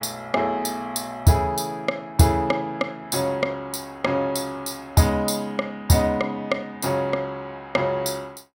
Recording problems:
none

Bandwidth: 16.5 kHz